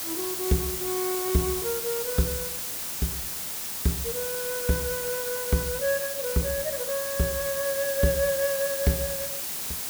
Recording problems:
background hiss; slope 0 dB per octave, SNR 1 dB

